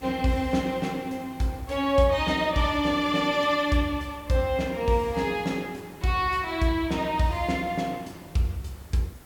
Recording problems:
hiss; slope -5 dB per octave, SNR 23 dB

